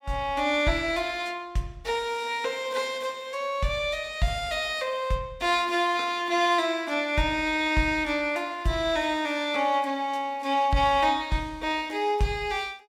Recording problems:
none

